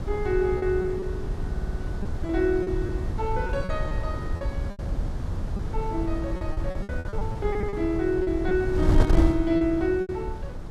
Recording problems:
wind on the microphone; below 100 Hz, SNR 3 dB
lost packets; 10% of the sound replaced, filled with repeated pitch periods
audio stuttering; at 1.5 s

